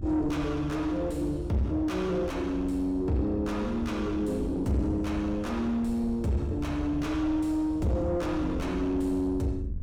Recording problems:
distorted audio; soft clipping, signal-to-distortion ratio 10 dB
electrical hum; 50 Hz, harmonics up to 1.7 kHz, SNR 27 dB
rumble; below 110 Hz, SNR 9 dB

